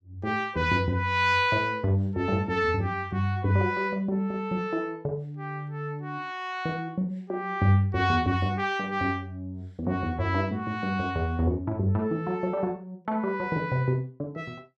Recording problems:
none

